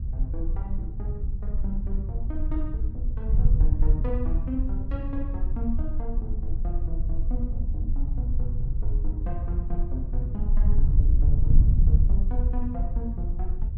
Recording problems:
wind noise; below 62 Hz, SNR -10 dB

